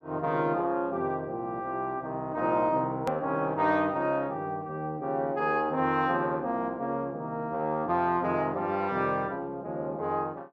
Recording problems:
click at an edit; at 3 s

